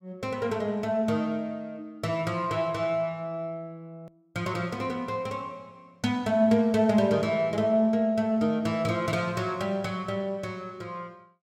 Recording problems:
hard cut with a click; at 4 s

